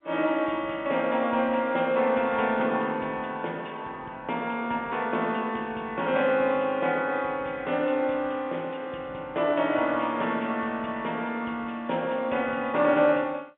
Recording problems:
phone line; 240 Hz to 3.6 kHz, G.711

